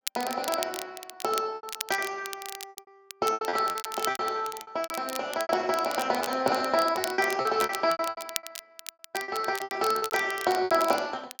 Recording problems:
lossy compression; Speex, log-spectral distance 3 dB
crackle; vinyl, SNR 11 dB
packet loss; 18% of the sound replaced, filled with repeated pitch periods

